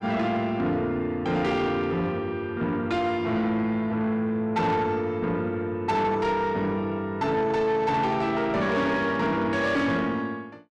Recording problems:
distortion; soft clipping, signal-to-distortion ratio 11 dB

